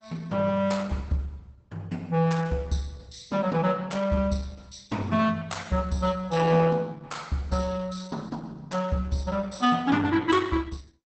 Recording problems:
lossy compression; Opus, log-spectral distance 4 dB, nothing above 8.2 kHz

